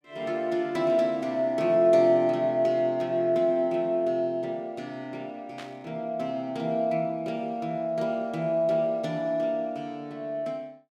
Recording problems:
static burst; at 5.5 s; peak -11 dB vs average level

